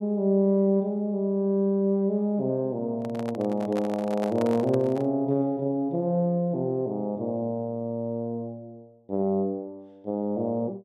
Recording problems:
microphone handling noise; from 3 to 5 s; peak -3 dB vs average level

